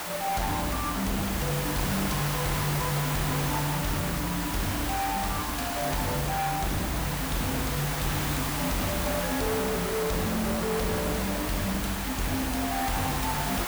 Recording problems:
distorted audio; hard clipping, signal-to-distortion ratio 7 dB
background hiss; SNR 1 dB

